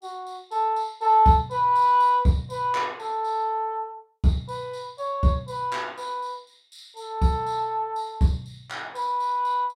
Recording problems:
none

